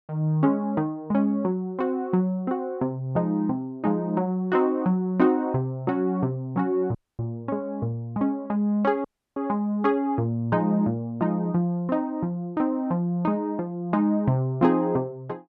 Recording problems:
dropout; at 7 s and at 9 s

